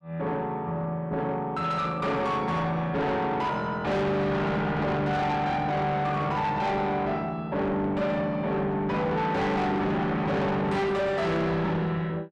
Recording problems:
distorted audio; soft clipping, signal-to-distortion ratio 6 dB

